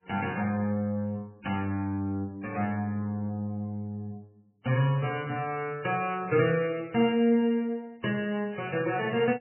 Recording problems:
codec artefacts; MP3, log-spectral distance 3 dB, nothing above 2.4 kHz

